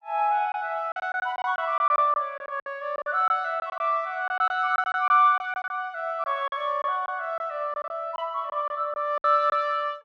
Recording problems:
packet loss; 11% of the sound replaced, filled with silence

